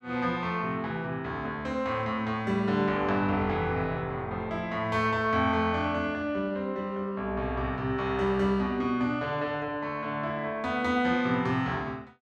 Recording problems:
none

